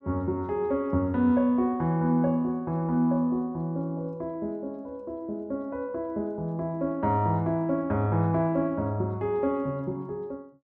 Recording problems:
none

